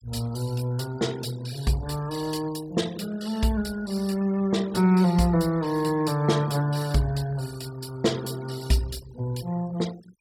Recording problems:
noise reduction artefacts; signal-to-artefact ratio 18 dB

